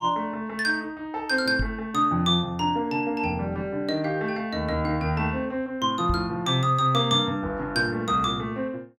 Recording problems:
knock on the microphone; at 1.5 s and at 6 s; peak +1 dB vs average level

